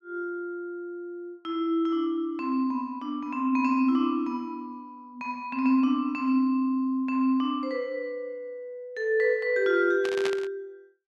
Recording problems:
burst of static; at 10 s; peak -1 dB vs average level

